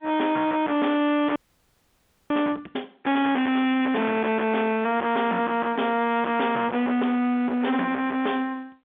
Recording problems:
phone line; 190 Hz to 3.6 kHz, G.711
distortion; hard clipping, signal-to-distortion ratio 8 dB
frozen audio; at 1.5 s for 1 s

